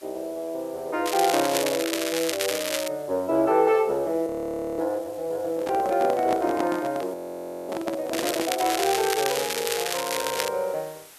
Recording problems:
hiss; slope 0 dB per octave, SNR 22 dB
crackle; from 1 to 3 s and from 8 to 10 s; loose cable, SNR 3 dB
audio freezing; at 4.5 s for 0.5 s and at 7 s for 0.5 s
handling noise; from 5.5 to 8.5 s; peak -1 dB vs average level

